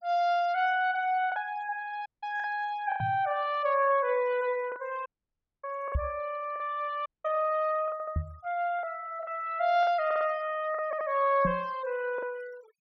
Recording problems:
noise reduction artefacts; signal-to-artefact ratio 24 dB
lost packets; 5% of the sound replaced, filled with the last packet
audio cutting out; at 2 s, at 5 s for 0.5 s and at 7 s
microphone bump; 4 times, first at 3 s; peak +3 dB vs average level
stutter; at 8 s, at 10 s and at 11 s

